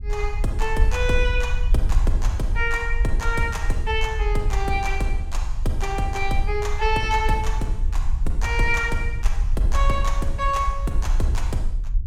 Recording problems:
low-frequency rumble; below 52 Hz, SNR 0 dB

